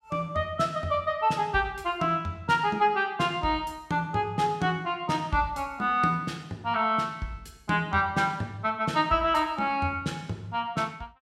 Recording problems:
none

